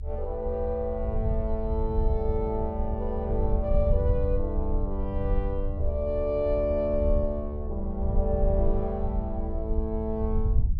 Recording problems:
low-frequency rumble; below 72 Hz, SNR 0 dB

